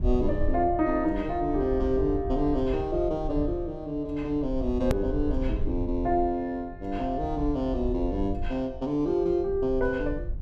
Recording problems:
rumble; below 66 Hz, SNR 8 dB
hard cut with a click; at 5 s

